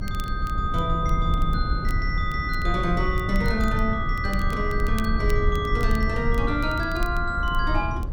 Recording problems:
rumble; below 88 Hz, SNR 1 dB
crackle; vinyl, SNR 22 dB

